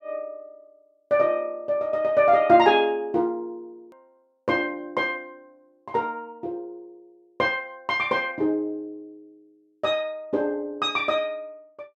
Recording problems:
click at an edit; at 4 s

